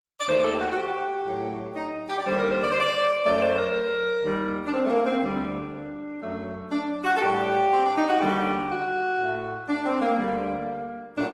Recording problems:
lossy codec; Opus, log-spectral distance 3 dB, nothing above 17.7 kHz

